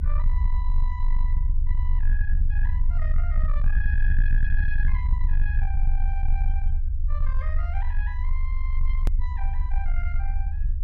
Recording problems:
distortion; soft clipping, signal-to-distortion ratio 12 dB
rumble; below 50 Hz, strongest tone 24 Hz, SNR -12 dB
edit click; at 9 s

